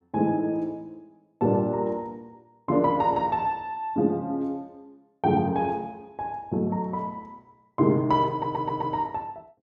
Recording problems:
audio stuttering; at 8.5 s

